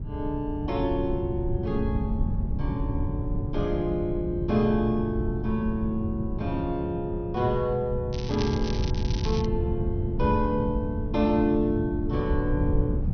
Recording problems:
low-pass filter; nothing above 6.1 kHz
wind on the microphone; below 140 Hz, SNR 3 dB
crackle; at 8 s and at 9 s; loose cable, SNR 12 dB

